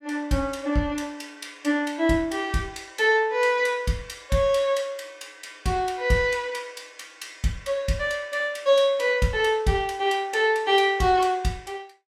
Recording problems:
none

